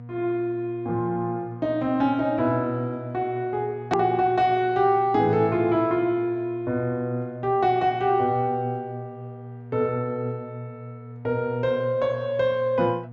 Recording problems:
treble missing; nothing above 8 kHz
electrical hum; 60 Hz, harmonics up to 960 Hz, SNR 16 dB
click at an edit; at 4 s

